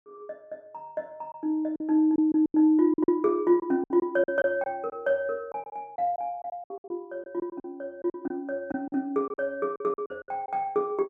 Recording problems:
lost packets; 12% of the sound replaced, filled with silence

